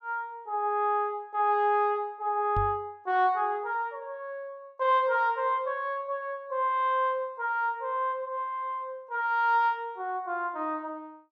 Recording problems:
microphone thump; at 2.5 s; peak -1 dB vs average level

